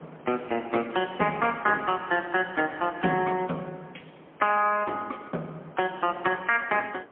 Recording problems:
phone line; 220 Hz to 3.2 kHz, AMR-NB, then MP3
wind noise; below 950 Hz, SNR 22 dB

